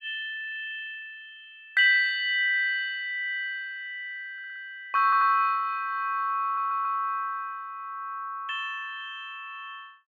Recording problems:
audio stuttering; at 4.5 s, at 5 s and at 6.5 s

